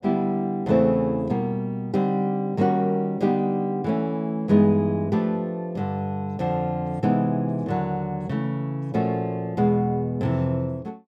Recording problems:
none

